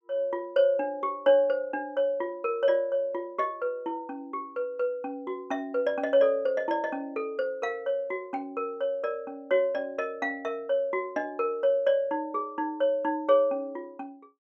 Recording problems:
none

